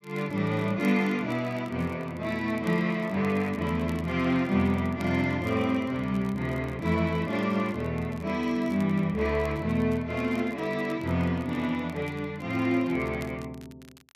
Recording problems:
crackle; vinyl, SNR 26 dB

